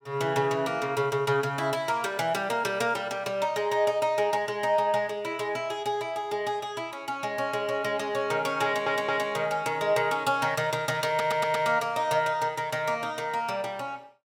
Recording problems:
stutter; at 8.5 s and at 11 s

